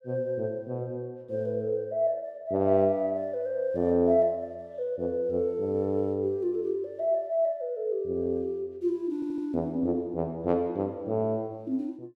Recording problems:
stutter; at 9 s

